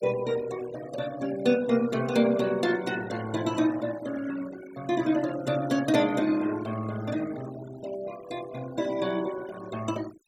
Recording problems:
denoising artefacts; signal-to-artefact ratio 17 dB

